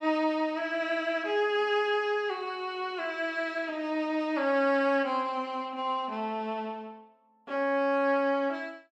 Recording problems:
none

